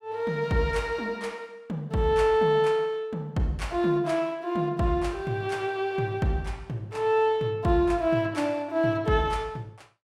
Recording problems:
none

